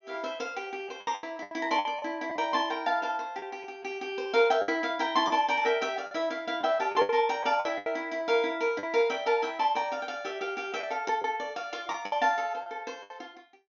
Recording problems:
low-pass filter; nothing above 6.9 kHz
packet loss; 8% of the sound replaced, filled with the last packet
static burst; at 4.5 s; peak -11 dB vs average level

